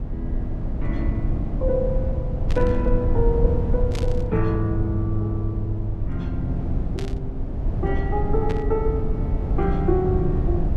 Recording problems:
rumble; below 110 Hz, SNR 0 dB
burst of static; 4 times, first at 2.5 s; peak -5 dB vs average level

